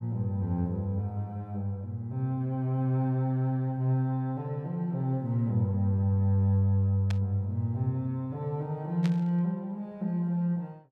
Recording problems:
burst of static; at 7 s and at 9 s; peak -8 dB vs average level

